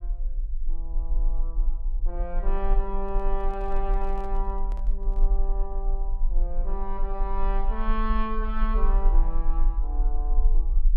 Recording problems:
low-frequency rumble; below 36 Hz, strongest tone 22 Hz, SNR -5 dB
handling noise; from 3 to 5.5 s; peak -10 dB vs average level

